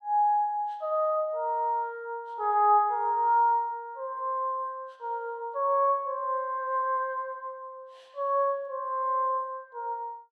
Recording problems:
none

